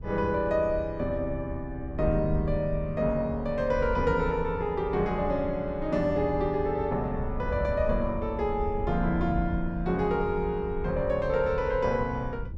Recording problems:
wind noise; below 84 Hz, SNR 9 dB

